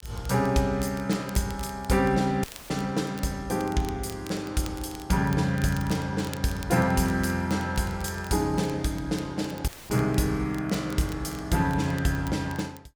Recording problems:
crackle; vinyl, SNR 20 dB
dropout; at 2.5 s and at 9.5 s; filled with static

